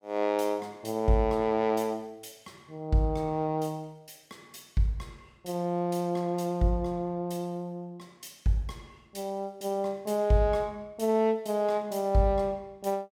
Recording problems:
none

